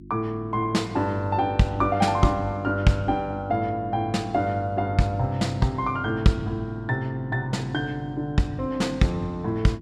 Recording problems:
electrical hum; 50 Hz, harmonics up to 350 Hz, SNR 17 dB

